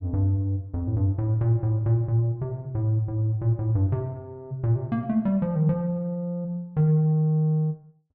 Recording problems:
none

